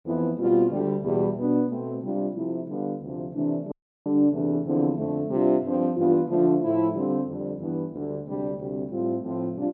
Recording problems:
audio cutting out; at 3.5 s

